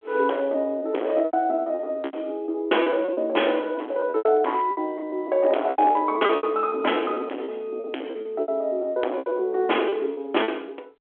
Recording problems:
telephone audio; 240 Hz to 3.4 kHz, G.726
distorted audio; hard clipping, signal-to-distortion ratio 10 dB
packet loss; 19% of the sound replaced, filled with repeated pitch periods

